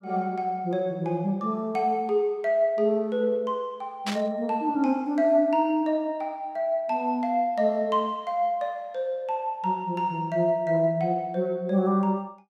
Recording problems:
static burst; at 4 s; peak -2 dB vs average level

